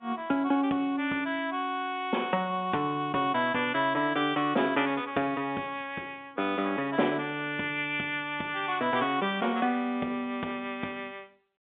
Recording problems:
telephone audio; 220 Hz to 3.6 kHz, G.711

